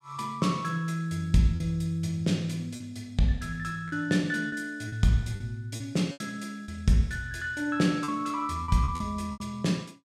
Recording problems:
packet loss; 6% of the sound replaced, filled with repeated pitch periods

